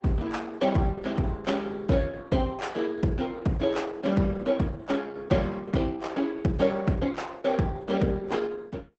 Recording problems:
lossy compression; Opus, log-spectral distance 3 dB, nothing above 8 kHz

